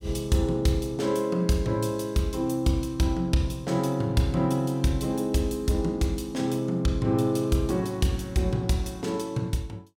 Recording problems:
none

